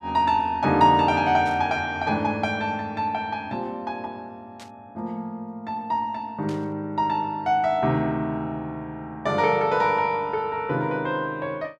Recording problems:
burst of static; at 1.5 s, at 4.5 s and at 6.5 s; peak -15 dB vs average level

